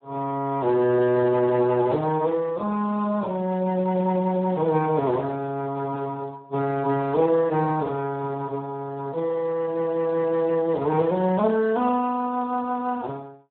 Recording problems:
telephone audio; 170 Hz to 2 kHz, Speex

